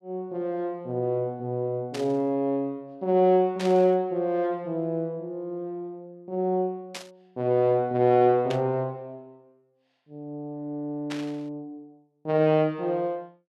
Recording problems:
static burst; 5 times, first at 2 s; peak -6 dB vs average level

